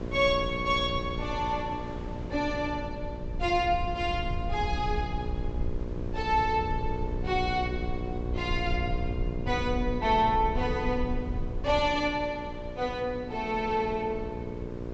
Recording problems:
treble cut off; nothing above 8 kHz
mains hum; 60 Hz, harmonics up to 1.2 kHz, SNR 10 dB
low-frequency rumble; below 84 Hz, SNR 8 dB
wind noise; below 630 Hz, SNR 18 dB

